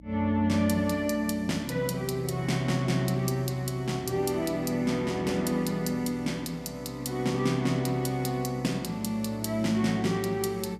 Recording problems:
hum; 60 Hz, harmonics up to 300 Hz, SNR 22 dB

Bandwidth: 15 kHz